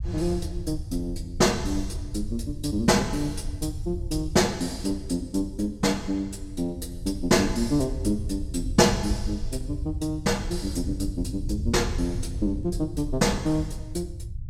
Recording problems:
rumble; below 90 Hz, SNR 8 dB

